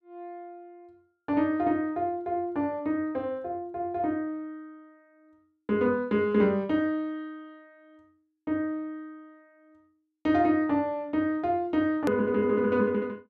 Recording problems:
click at an edit; at 12 s

